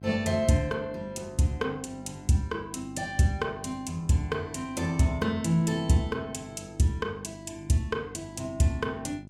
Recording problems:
electrical hum; 50 Hz, harmonics up to 700 Hz, SNR 17 dB

